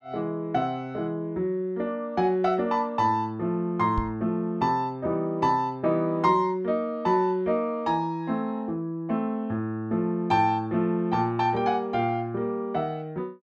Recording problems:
knock on the microphone; at 4 s; peak 0 dB vs average level

